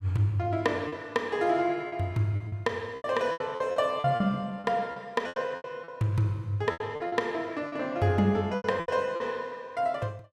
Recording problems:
lost packets; 11% of the sound replaced, filled with repeated pitch periods

